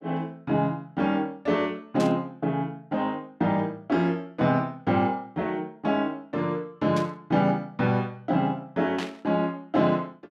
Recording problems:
burst of static; at 2 s, at 7 s and at 9 s; peak -4 dB vs average level

